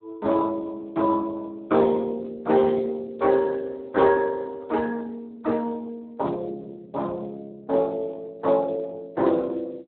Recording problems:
telephone audio; 280 Hz to 3.1 kHz, Speex

